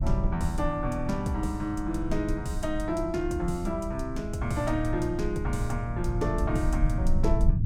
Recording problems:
low-frequency rumble; below 90 Hz, SNR 3 dB

